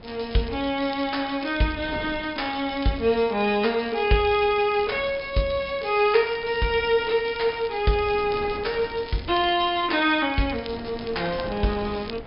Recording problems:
treble missing; nothing above 5.5 kHz
wind on the microphone; below 590 Hz, SNR 19 dB
crackling; vinyl, SNR 21 dB

